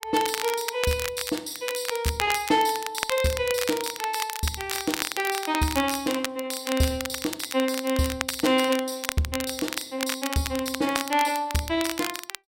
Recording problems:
crackle; vinyl, SNR 6 dB

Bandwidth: 16 kHz